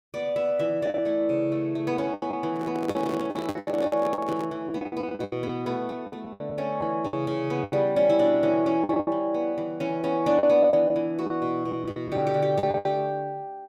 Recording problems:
lost packets; 11% of the sound replaced, filled with the last packet
handling noise; from 2.5 to 4.5 s; peak -2 dB vs average level

